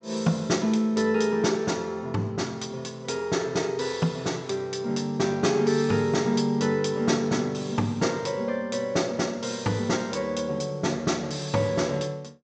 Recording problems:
treble cut off; nothing above 8 kHz

